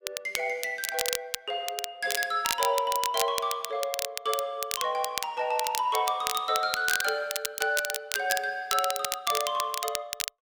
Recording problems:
crackling; vinyl, SNR 4 dB

